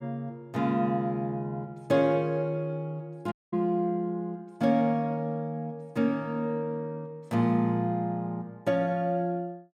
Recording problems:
dropout; at 3.5 s

